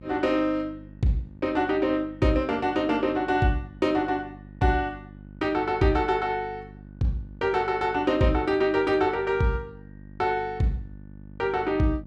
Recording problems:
electrical hum; 50 Hz, harmonics up to 600 Hz, SNR 20 dB

